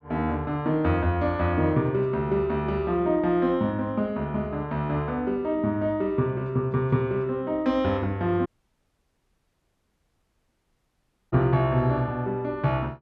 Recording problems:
audio cutting out; at 8.5 s for 3 s

